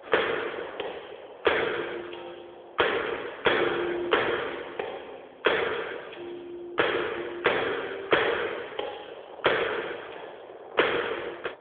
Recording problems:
phone line; 340 Hz to 3.4 kHz, AMR-NB
wind on the microphone; below 820 Hz, SNR 18 dB

